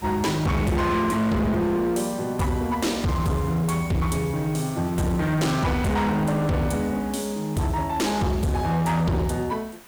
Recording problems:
distorted audio; hard clipping, signal-to-distortion ratio 7 dB
hiss; slope -2 dB per octave, SNR 21 dB

